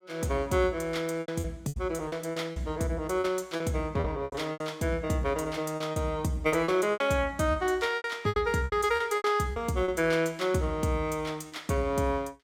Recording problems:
lost packets; 11% of the sound replaced, filled with repeated pitch periods

